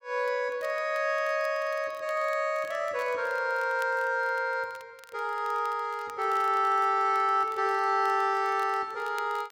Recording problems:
crackle; vinyl, SNR 26 dB

